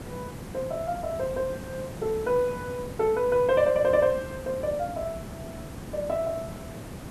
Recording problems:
hiss; slope -6 dB per octave, SNR 12 dB

